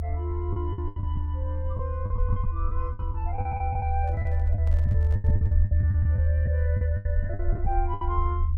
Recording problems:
rumble; below 84 Hz, strongest tone 78 Hz, SNR -9 dB
lost packets; 16% of the sound replaced, filled with the last packet
handling noise; from 4 to 5.5 s; peak -6 dB vs average level

